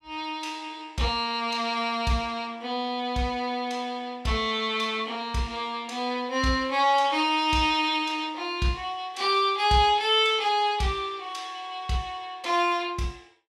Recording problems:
none

